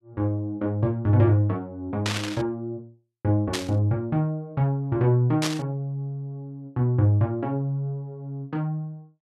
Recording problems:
burst of static; at 2 s, at 3.5 s and at 5.5 s; peak +2 dB vs average level

